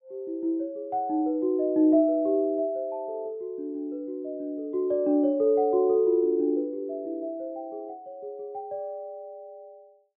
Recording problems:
treble cut off; nothing above 4 kHz

